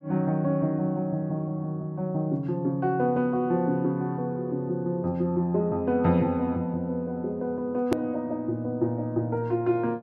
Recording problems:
edit click; at 8 s

